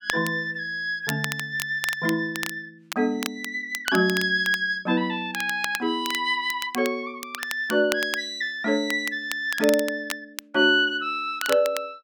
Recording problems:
crackle; vinyl, SNR 10 dB

